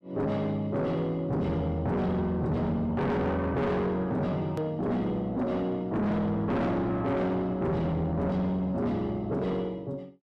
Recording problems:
distorted audio; soft clipping, signal-to-distortion ratio 8 dB
hard cut with a click; at 4.5 s

